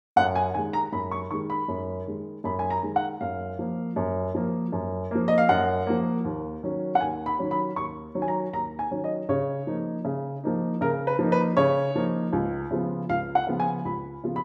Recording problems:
none

